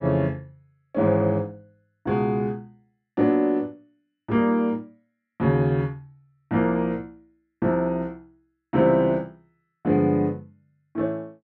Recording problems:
none

